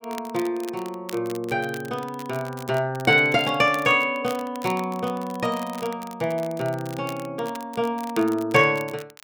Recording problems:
crackle; vinyl, SNR 19 dB

